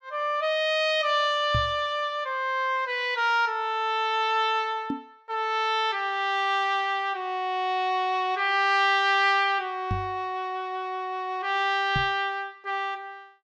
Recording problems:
knock on the microphone; 4 times, first at 1.5 s; peak 0 dB vs average level

